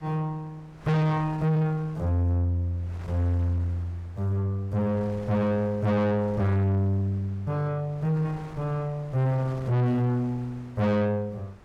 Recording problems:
distorted audio; soft clipping, signal-to-distortion ratio 6 dB
wind on the microphone; below 1.1 kHz, SNR 21 dB

